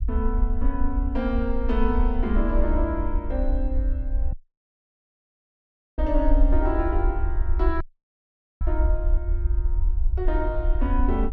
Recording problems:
rumble; below 56 Hz, SNR -2 dB
audio cutting out; at 4.5 s for 1.5 s and at 8 s for 1 s

